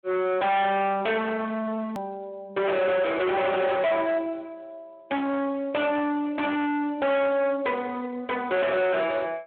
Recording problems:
phone line; 320 Hz to 3.4 kHz, Speex
distorted audio; hard clipping, signal-to-distortion ratio 6 dB
click at an edit; at 2 s

